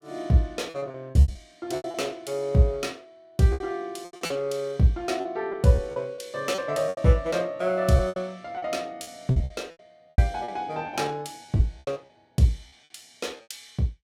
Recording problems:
lost packets; 13% of the sound replaced, filled with repeated pitch periods

